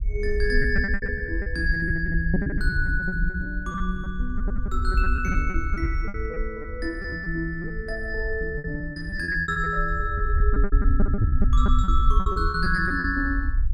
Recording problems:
rumble; below 64 Hz, SNR 1 dB
packet loss; 16% of the sound replaced, filled with repeated pitch periods

